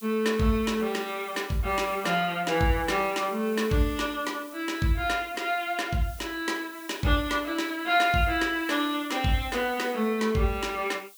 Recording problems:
hiss; SNR 20 dB

